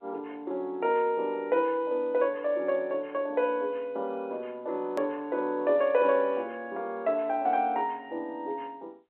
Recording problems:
phone line; 300 Hz to 3.4 kHz, G.711
hard cut with a click; at 5 s

